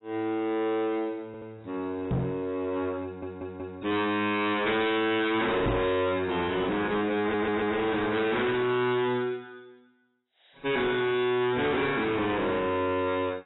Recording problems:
codec artefacts; AAC, log-spectral distance 4 dB, nothing above 3.9 kHz
distortion; hard clipping, uneven, signal-to-distortion ratio 5 dB
audio stuttering; at 1.5 s, at 3 s and at 7 s
microphone bump; at 2 s and at 5.5 s; peak +5 dB vs average level

